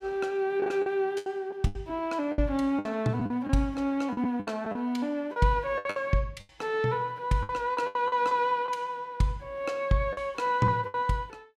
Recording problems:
lost packets; 11% of the sound replaced, filled with the last packet

